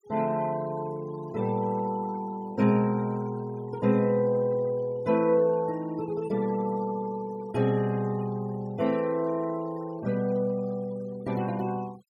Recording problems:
noise reduction artefacts; signal-to-artefact ratio 24 dB

